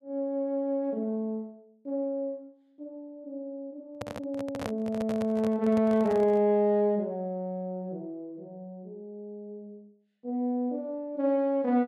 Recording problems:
microphone handling noise; from 4 to 6.5 s; peak -2 dB vs average level

